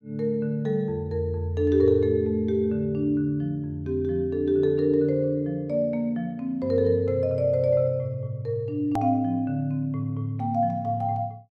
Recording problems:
hard cut with a click; at 9 s

